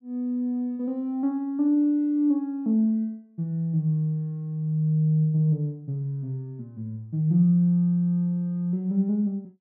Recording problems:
none

